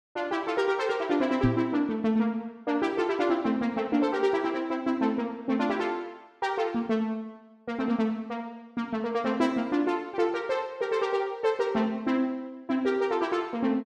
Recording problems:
knock on the microphone; at 1.5 s; peak +6 dB vs average level

